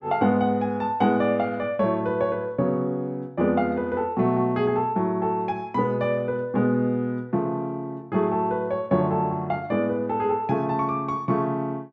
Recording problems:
none

